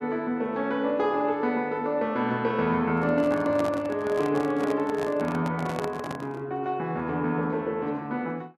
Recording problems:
microphone handling noise; from 3 to 6.5 s; peak -2 dB vs average level

